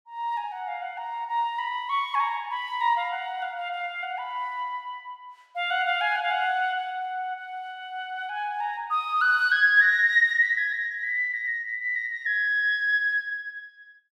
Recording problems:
none

